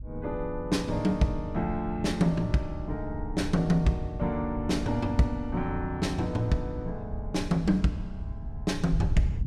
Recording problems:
wind noise; below 90 Hz, SNR 9 dB

